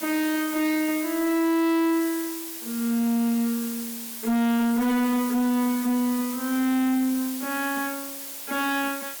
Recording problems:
distortion; hard clipping, signal-to-distortion ratio 10 dB
hiss; slope +1 dB per octave, SNR 9 dB

